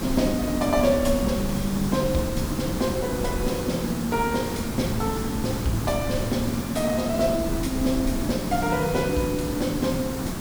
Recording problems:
hiss; SNR 4 dB
rumble; below 76 Hz, SNR 12 dB

